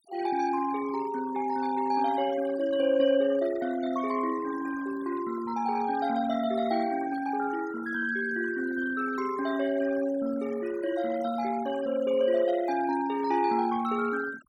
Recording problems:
denoising artefacts; signal-to-artefact ratio 17 dB

